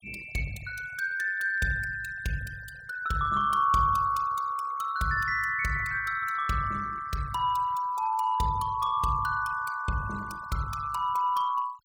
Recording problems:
denoising artefacts; signal-to-artefact ratio 19 dB

